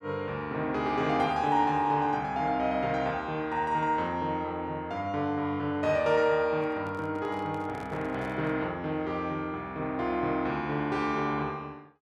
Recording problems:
microphone handling noise; from 6.5 to 8.5 s; peak -10 dB vs average level

